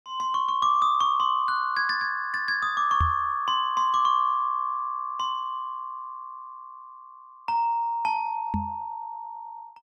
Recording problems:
microphone thump; at 3 s and at 8.5 s; peak +2 dB vs average level

